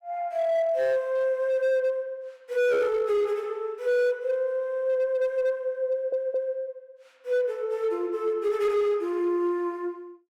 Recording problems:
distorted audio; hard clipping, signal-to-distortion ratio 10 dB
stutter; at 6 s

